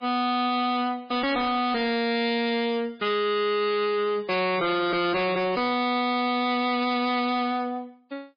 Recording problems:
codec artefacts; MP3, log-spectral distance 4 dB, nothing above 4.2 kHz
distortion; hard clipping, signal-to-distortion ratio 6 dB

